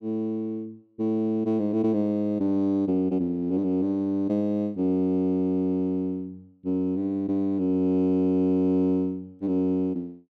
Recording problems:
none

